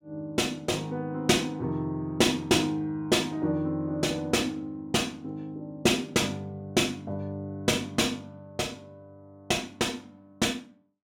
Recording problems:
none

